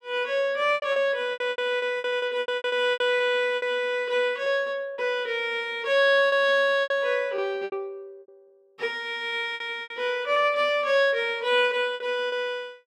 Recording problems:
packet loss; 11% of the sound replaced, filled with repeated pitch periods

